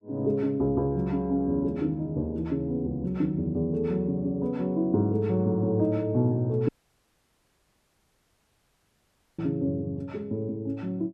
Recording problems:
dropout; at 6.5 s for 2.5 s

